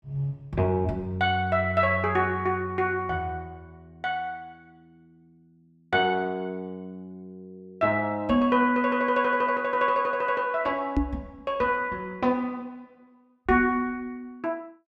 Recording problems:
microphone thump; at 11 s; peak +4 dB vs average level

